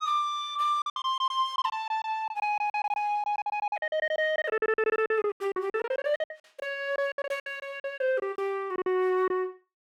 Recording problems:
packet loss; 19% of the sound replaced, filled with silence

